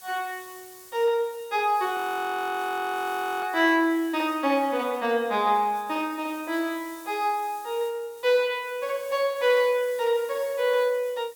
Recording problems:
hiss; SNR 21 dB
frozen audio; at 2 s for 1.5 s

